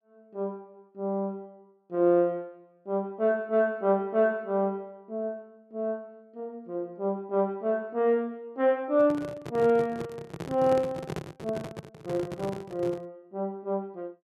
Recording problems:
microphone handling noise; from 9 to 13 s; peak -3 dB vs average level

